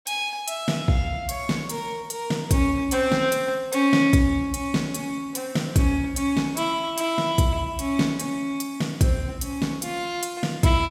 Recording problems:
none

